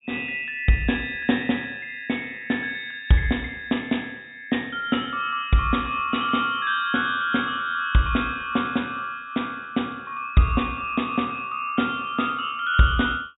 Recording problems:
low-pass filter; nothing above 4 kHz

